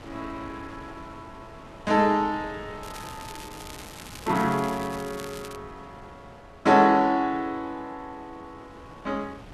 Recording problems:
wind on the microphone; below 1 kHz, SNR 21 dB
crackle; from 3 to 5.5 s; loose cable, SNR 18 dB

